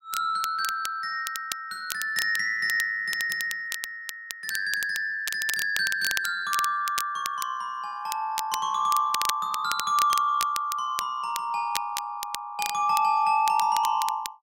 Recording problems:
crackle; vinyl, SNR 9 dB

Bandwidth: 16 kHz